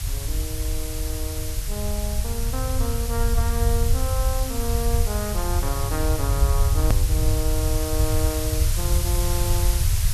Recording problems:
hiss; slope +1 dB per octave, SNR 0 dB
rumble; below 84 Hz, SNR -6 dB
edit click; at 7 s

